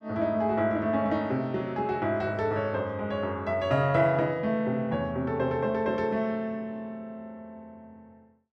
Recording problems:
none

